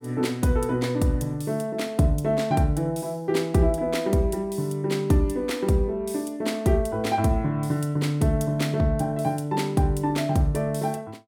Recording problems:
none

